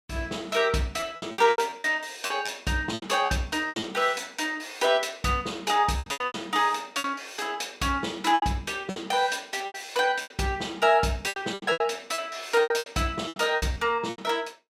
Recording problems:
lost packets; 13% of the sound replaced, filled with repeated pitch periods

